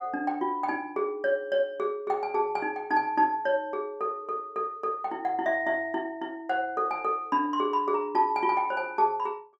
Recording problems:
none

